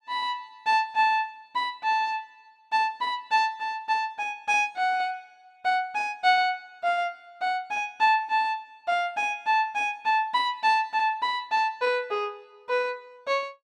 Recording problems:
none

